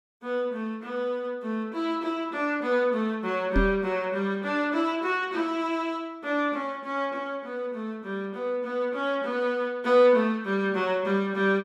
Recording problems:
knock on the microphone; at 3.5 s; peak +5 dB vs average level

